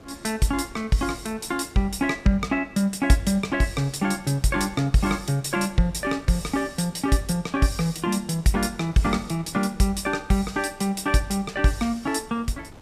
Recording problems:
wind on the microphone; below 650 Hz, SNR 24 dB

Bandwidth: 15 kHz